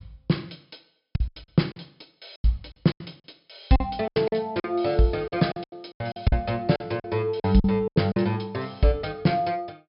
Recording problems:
low-pass filter; nothing above 5.5 kHz
packet loss; 13% of the sound replaced, filled with silence

